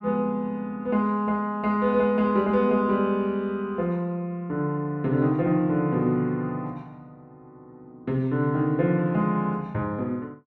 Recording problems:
none

